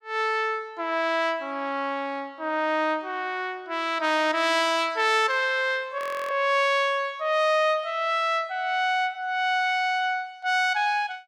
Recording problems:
frozen audio; at 6 s

